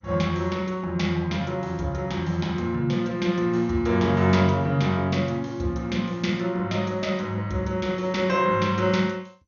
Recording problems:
codec artefacts; MP2, log-spectral distance 2 dB, nothing above 6.7 kHz

